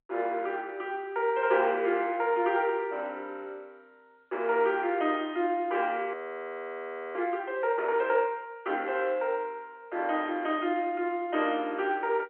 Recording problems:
telephone audio; 260 Hz to 3.2 kHz, G.711
frozen audio; at 6 s for 1 s

